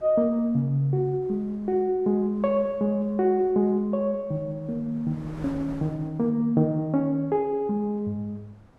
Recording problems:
wind on the microphone; below 680 Hz, SNR 23 dB

